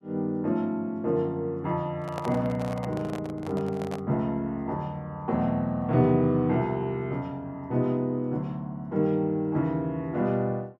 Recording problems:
microphone handling noise; from 2 to 4 s; peak -4 dB vs average level

